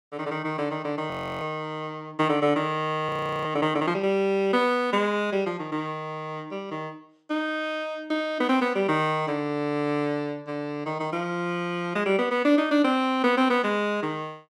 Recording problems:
audio freezing; at 1 s and at 3 s

